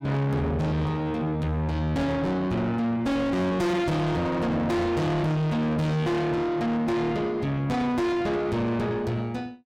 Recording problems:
distortion; soft clipping, signal-to-distortion ratio 7 dB

